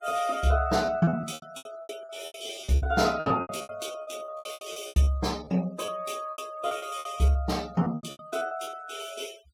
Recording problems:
noise reduction artefacts; signal-to-artefact ratio 22 dB
lost packets; 21% of the sound replaced, filled with repeated pitch periods

